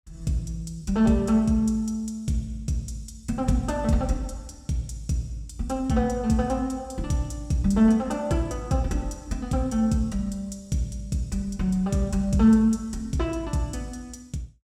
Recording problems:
none

